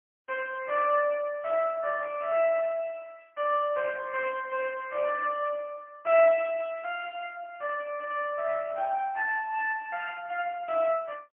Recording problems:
telephone audio; 300 Hz to 3.3 kHz, AMR-NB, then MP3

